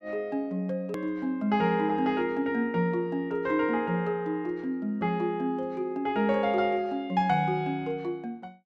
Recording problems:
edit click; at 1 s

